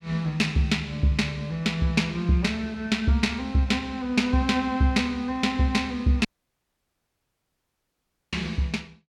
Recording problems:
audio cutting out; at 6.5 s for 2 s

